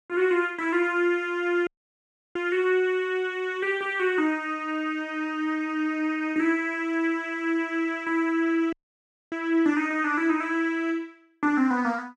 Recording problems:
dropout; at 1.5 s for 0.5 s and at 8.5 s for 0.5 s

